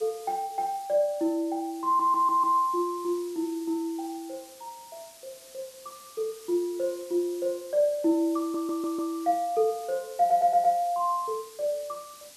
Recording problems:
hiss; slope +1 dB per octave, SNR 21 dB
stutter; at 2 s, at 8.5 s and at 10 s

